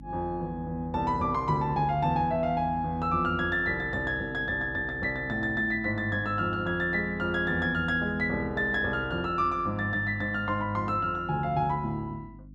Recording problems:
electrical hum; 50 Hz, harmonics up to 300 Hz, SNR 18 dB

